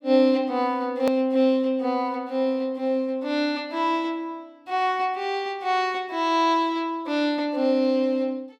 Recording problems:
click at an edit; at 1 s

